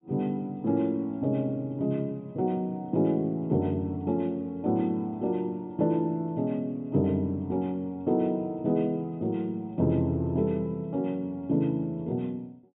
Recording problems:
treble cut off; nothing above 4 kHz

